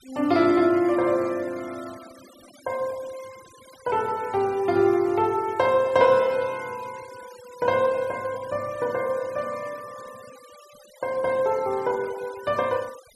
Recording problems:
noise reduction artefacts; signal-to-artefact ratio 23 dB

